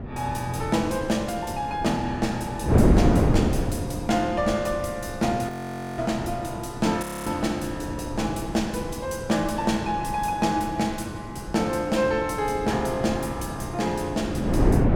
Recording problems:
wind noise; below 350 Hz, SNR 3 dB
frozen audio; at 5.5 s and at 7 s

